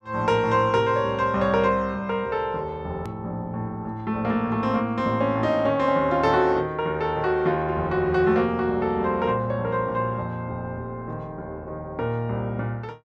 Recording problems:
hard cut with a click; at 3 s

